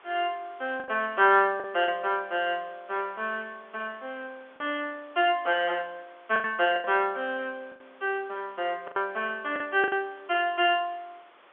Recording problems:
telephone audio; 300 Hz to 3.6 kHz, G.711
background hiss; SNR 27 dB
packet loss; 6% of the sound replaced, filled with the last packet

